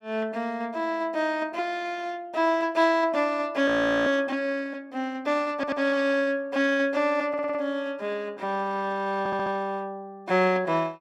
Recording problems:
frozen audio; at 3.5 s
audio stuttering; at 5.5 s, at 7.5 s and at 9 s

